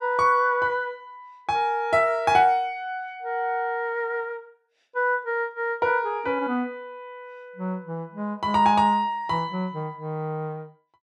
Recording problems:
none

